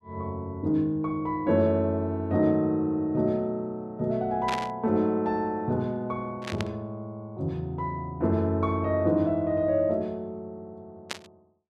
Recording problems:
burst of static; at 4.5 s, at 6.5 s and at 11 s; peak -1 dB vs average level

